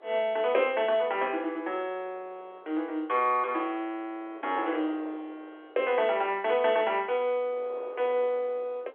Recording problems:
telephone audio; 340 Hz to 3.4 kHz, G.711
wind on the microphone; below 820 Hz, SNR 21 dB

